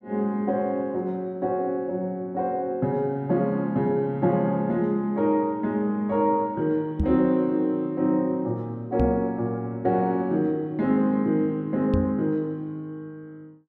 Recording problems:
microphone thump; at 7 s, at 9 s and at 12 s; peak +3 dB vs average level

